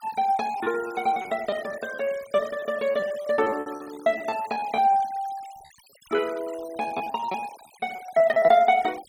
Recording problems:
denoising artefacts; signal-to-artefact ratio 20 dB
packet loss; 15% of the sound replaced, filled with repeated pitch periods

